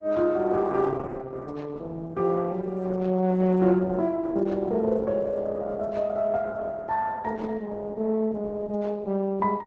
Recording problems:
lossy codec; Opus, log-spectral distance 3 dB

